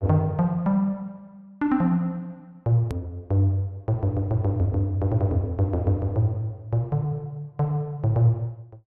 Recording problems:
click at an edit; at 3 s

